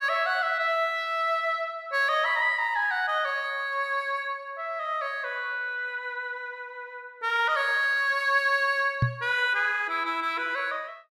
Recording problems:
microphone thump; at 9 s; peak +5 dB vs average level

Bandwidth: 14.5 kHz